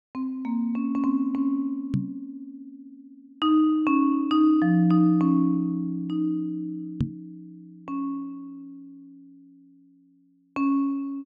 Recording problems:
microphone bump; at 2 s and at 7 s; peak +3 dB vs average level

